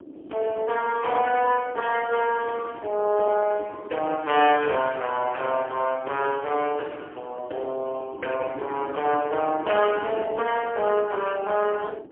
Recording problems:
phone line; 260 Hz to 3.2 kHz, AMR-NB, then MP3
wind noise; below 400 Hz, SNR 17 dB

